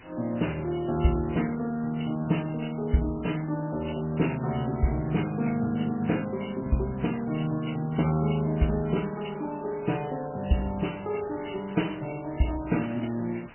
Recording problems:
codec artefacts; MP2, then MP3, log-spectral distance 16 dB, nothing above 3 kHz
hiss; SNR 21 dB

